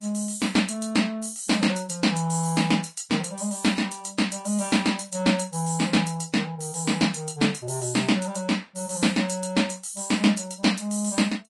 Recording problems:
lossy compression; Vorbis, log-spectral distance 6 dB

